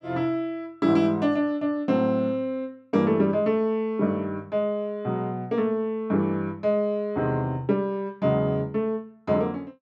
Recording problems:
none

